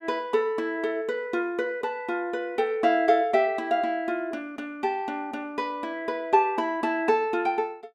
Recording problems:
none

